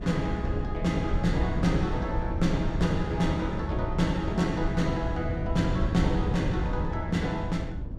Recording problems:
wind noise; below 120 Hz, SNR 3 dB

